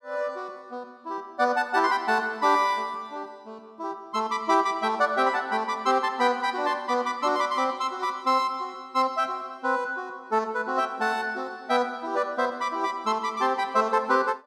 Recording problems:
none

